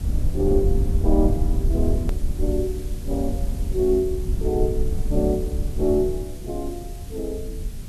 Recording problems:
background hiss; slope +1 dB per octave, SNR 20 dB
rumble; below 74 Hz, SNR 1 dB
hard cut with a click; at 2 s

